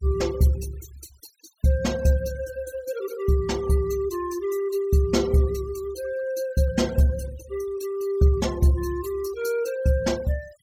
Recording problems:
noise reduction artefacts; signal-to-artefact ratio 20 dB

